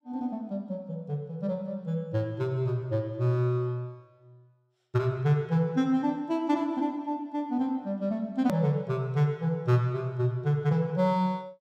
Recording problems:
edit click; at 8.5 s

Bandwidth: 15 kHz